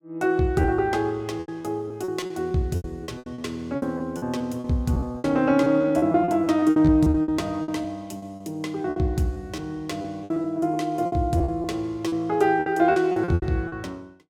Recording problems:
packet loss; 16% of the sound replaced, filled with repeated pitch periods

